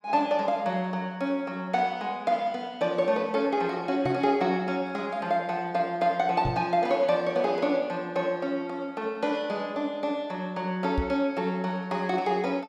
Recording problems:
knock on the microphone; at 4 s, at 6.5 s and at 11 s; peak +2 dB vs average level

